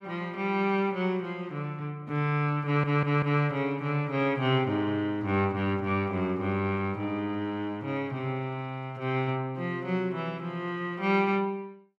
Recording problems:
stutter; at 2.5 s

